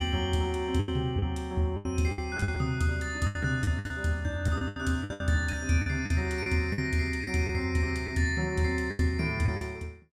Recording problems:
packet loss; 12% of the sound replaced, filled with the last packet

